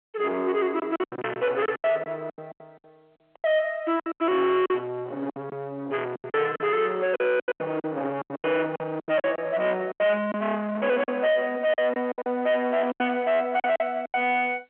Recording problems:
telephone audio; 240 Hz to 3.7 kHz, G.711
distortion; soft clipping, signal-to-distortion ratio 8 dB
lost packets; 15% of the sound replaced, filled with silence
crackling; at 13 s; loose cable, SNR 26 dB

